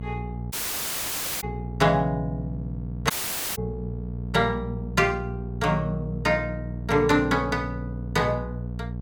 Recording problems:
electrical hum; 60 Hz, harmonics up to 660 Hz, SNR 8 dB
audio cutting out; at 0.5 s for 1 s and at 3 s

